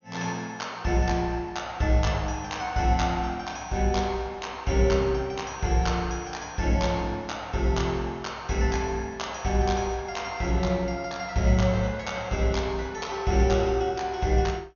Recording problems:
treble missing; nothing above 6.7 kHz

